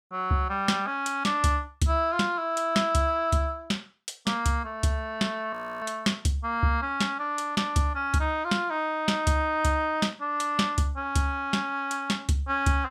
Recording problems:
audio freezing; at 5.5 s

